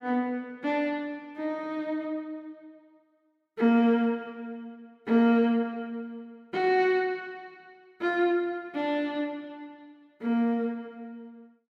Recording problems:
none

